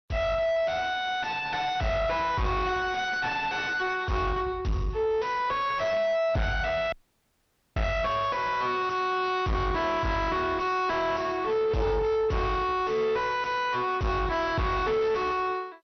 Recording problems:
lossy codec; MP2, log-spectral distance 2 dB, nothing above 6 kHz
distorted audio; soft clipping, signal-to-distortion ratio 4 dB
audio cutting out; at 7 s for 1 s

